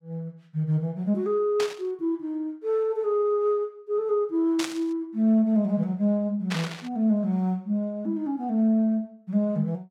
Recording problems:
static burst; at 1.5 s, at 4.5 s and at 6.5 s; peak -2 dB vs average level

